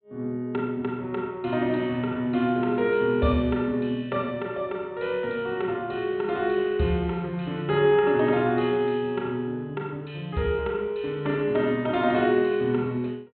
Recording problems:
treble cut off; nothing above 4 kHz

